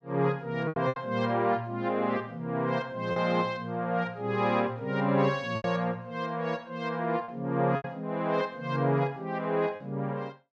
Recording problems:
lost packets; 4% of the sound replaced, filled with repeated pitch periods

